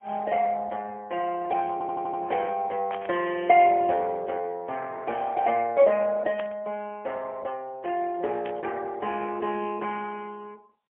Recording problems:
phone line; 280 Hz to 3.3 kHz, AMR-NB, then MP3
stutter; at 1.5 s
burst of static; at 3 s, at 6.5 s and at 8.5 s; peak -6 dB vs average level

